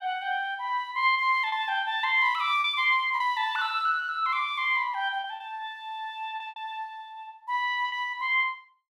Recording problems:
packet loss; 4% of the sound replaced, filled with repeated pitch periods

